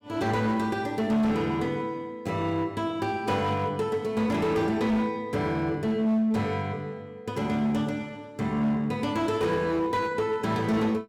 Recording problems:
distorted audio; hard clipping, signal-to-distortion ratio 11 dB

